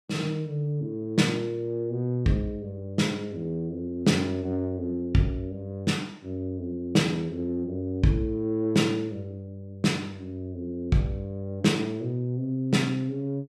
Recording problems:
none

